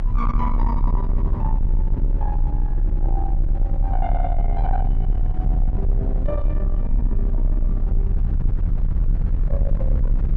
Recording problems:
distortion; soft clipping, signal-to-distortion ratio 10 dB
rumble; below 54 Hz, strongest tone 30 Hz, SNR -8 dB

